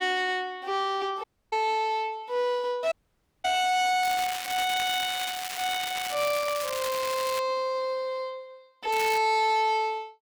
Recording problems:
distortion; soft clipping, signal-to-distortion ratio 12 dB
audio cutting out; at 1 s and at 3 s for 0.5 s
crackling; from 4 to 7.5 s and at 9 s; loose cable, SNR 7 dB

